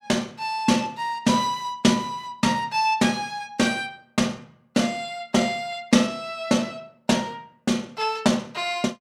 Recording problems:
none

